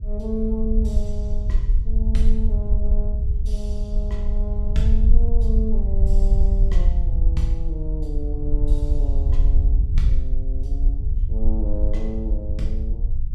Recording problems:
rumble; below 54 Hz, SNR -8 dB

